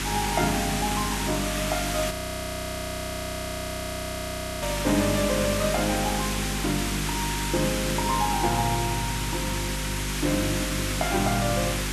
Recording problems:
electrical hum; 50 Hz, harmonics up to 400 Hz, SNR 5 dB
background hiss; SNR 1 dB
frozen audio; at 2 s for 2.5 s

